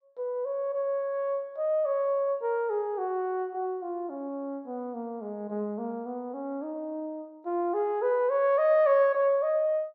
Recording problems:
none

